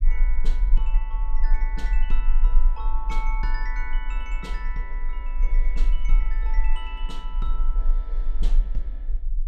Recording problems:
low-frequency rumble; below 34 Hz, strongest tone 20 Hz, SNR -11 dB

